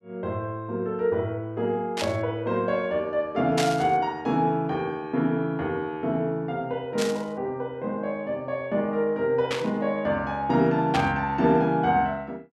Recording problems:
static burst; 5 times, first at 2 s; peak +1 dB vs average level

